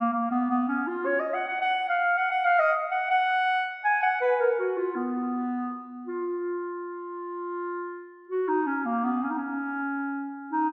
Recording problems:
none

